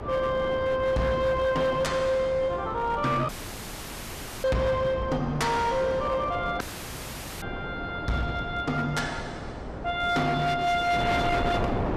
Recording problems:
distortion; hard clipping, signal-to-distortion ratio 12 dB
electrical hum; 60 Hz, harmonics up to 720 Hz, SNR 22 dB
wind noise; below 730 Hz, SNR 8 dB
dropout; at 3.5 s for 1 s and at 6.5 s for 1 s

